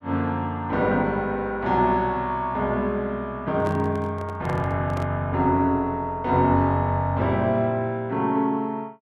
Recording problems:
handling noise; from 3.5 to 5 s; peak -7 dB vs average level

